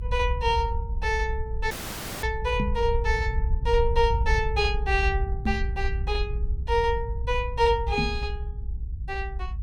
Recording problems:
low-frequency rumble; below 68 Hz, SNR 3 dB
audio cutting out; at 1.5 s for 0.5 s
microphone thump; at 2.5 s, at 5.5 s and at 8 s; peak +2 dB vs average level

